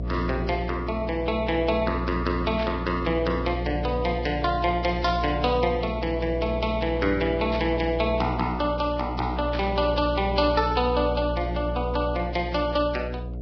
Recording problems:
lossy compression; Vorbis, log-spectral distance 3 dB, nothing above 5.3 kHz
electrical hum; 60 Hz, harmonics up to 660 Hz, SNR 7 dB
burst of static; 4 times, first at 2.5 s; peak -7 dB vs average level

